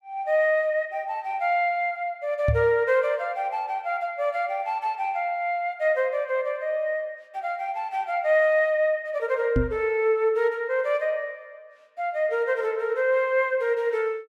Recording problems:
microphone thump; at 2.5 s and at 9.5 s; peak +4 dB vs average level

